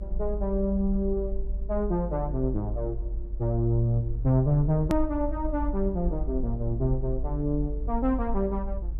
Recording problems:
low-frequency rumble; below 50 Hz, strongest tone 48 Hz, SNR 6 dB
click at an edit; at 5 s

